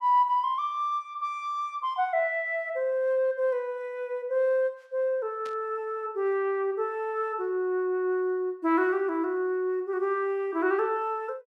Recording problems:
static burst; at 5.5 s; peak -14 dB vs average level

